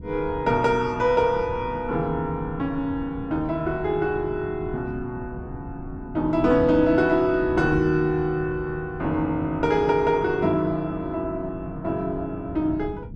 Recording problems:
wind on the microphone; below 190 Hz, SNR 14 dB

